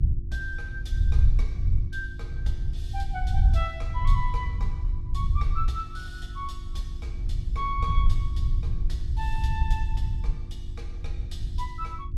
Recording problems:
hum; 50 Hz, harmonics up to 350 Hz, SNR 14 dB
low-frequency rumble; below 72 Hz, SNR -7 dB

